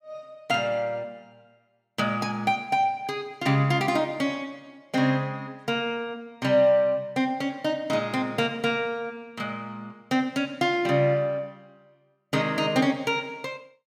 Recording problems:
none

